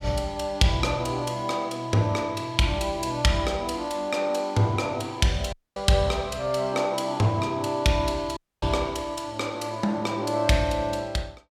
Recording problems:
dropout; at 5.5 s and at 8.5 s

